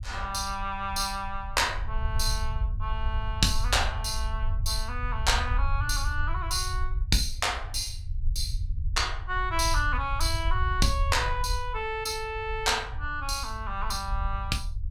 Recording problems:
rumble; below 68 Hz, SNR 4 dB

